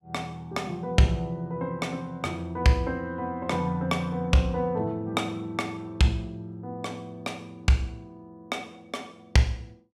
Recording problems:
none

